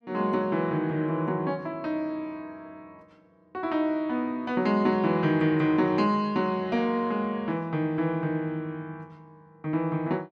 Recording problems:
none

